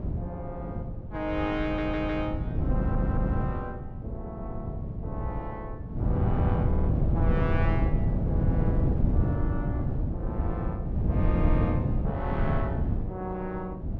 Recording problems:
wind on the microphone; below 170 Hz, SNR -6 dB
stutter; at 1.5 s, at 2.5 s and at 6.5 s

